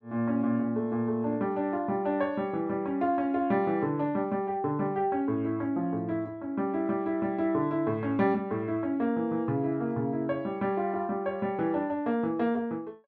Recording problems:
none

